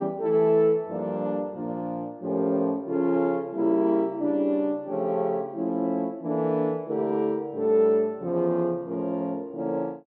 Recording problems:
none

